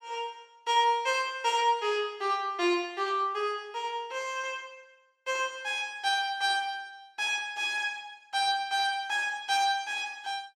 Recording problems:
none

